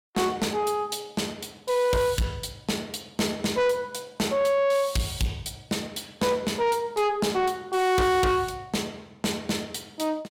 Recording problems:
distorted audio; soft clipping, signal-to-distortion ratio 7 dB

